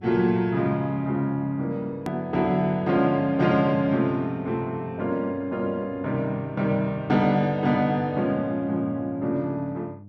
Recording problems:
electrical hum; 50 Hz, harmonics up to 600 Hz, SNR 21 dB
hard cut with a click; at 2 s

